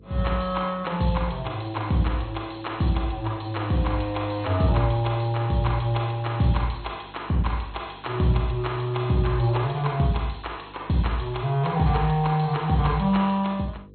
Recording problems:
codec artefacts; MP2, log-spectral distance 5 dB, nothing above 4.2 kHz
hum; 50 Hz, harmonics up to 500 Hz, SNR 24 dB

